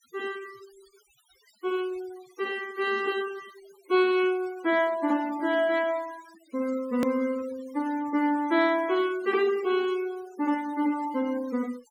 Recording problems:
noise reduction artefacts; signal-to-artefact ratio 20 dB
hard cut with a click; at 7 s

